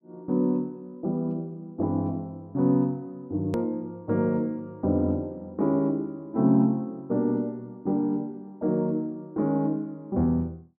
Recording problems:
edit click; at 3.5 s

